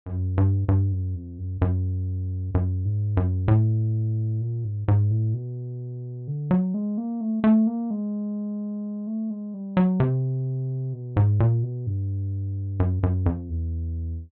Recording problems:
treble missing; nothing above 4.3 kHz

